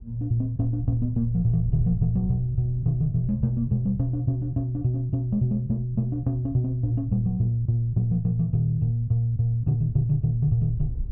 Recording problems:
wind on the microphone; below 80 Hz, SNR 14 dB

